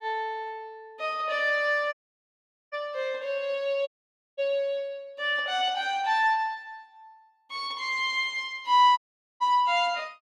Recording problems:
audio cutting out; at 2 s for 1 s, at 4 s for 0.5 s and at 9 s

